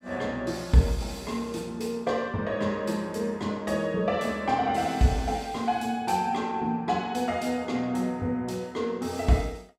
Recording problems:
none

